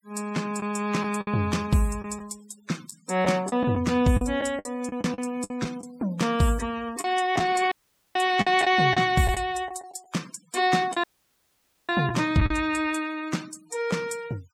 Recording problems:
denoising artefacts; signal-to-artefact ratio 22 dB
lost packets; 7% of the sound replaced, filled with the last packet
audio cutting out; at 7.5 s and at 11 s for 1 s

